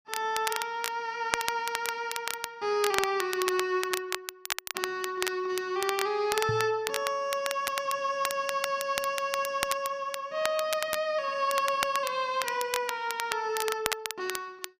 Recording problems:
crackling; vinyl, SNR 5 dB
microphone thump; at 6.5 s; peak +1 dB vs average level

